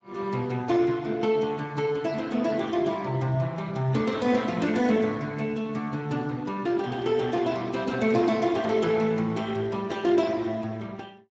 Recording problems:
lossy codec; Speex, log-spectral distance 3 dB, nothing above 7.3 kHz

